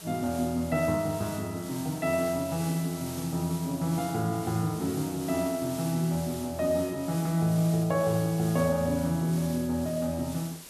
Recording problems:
hiss; slope -1 dB per octave, SNR 13 dB

